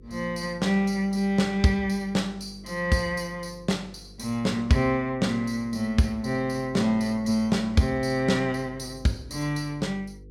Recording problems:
hum; 50 Hz, harmonics up to 500 Hz, SNR 22 dB

